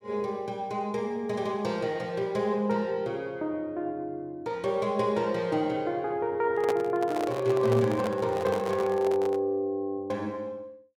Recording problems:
handling noise; from 6.5 to 9.5 s; peak +1 dB vs average level

